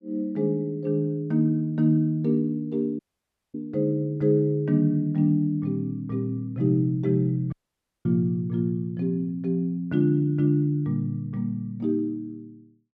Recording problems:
audio cutting out; at 3 s for 0.5 s and at 7.5 s for 0.5 s

